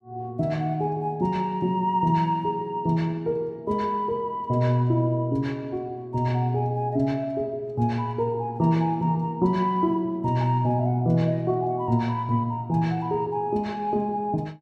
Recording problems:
none

